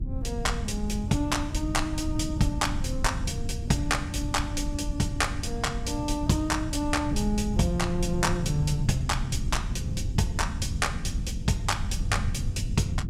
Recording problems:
low-frequency rumble; below 120 Hz, SNR 4 dB

